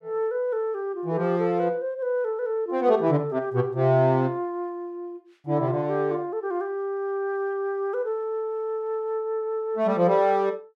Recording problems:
none

